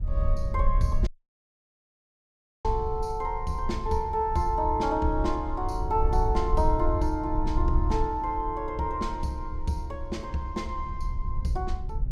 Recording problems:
rumble; below 60 Hz, SNR 3 dB
audio cutting out; at 1 s for 1.5 s

